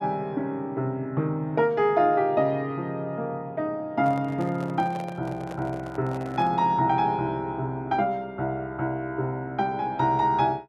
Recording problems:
handling noise; from 4 to 6.5 s; peak -9 dB vs average level

